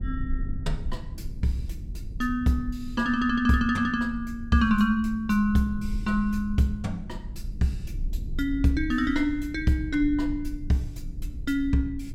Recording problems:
low-frequency rumble; below 68 Hz, SNR 11 dB

